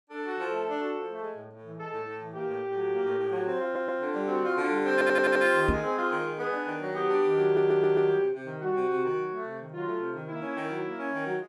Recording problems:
audio stuttering; at 3.5 s, at 5 s and at 7.5 s
knock on the microphone; at 5.5 s; peak +3 dB vs average level

